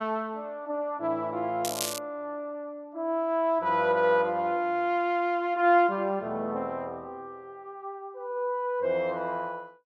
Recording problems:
crackling; at 1.5 s; loose cable, SNR 6 dB

